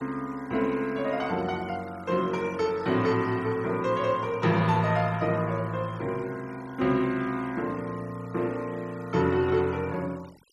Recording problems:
noise reduction artefacts; signal-to-artefact ratio 23 dB

